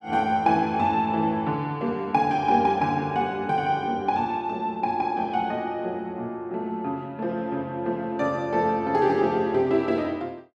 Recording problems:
none

